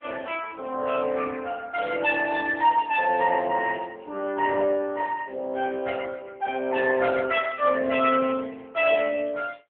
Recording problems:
phone line; 340 Hz to 2.8 kHz, AMR-NB

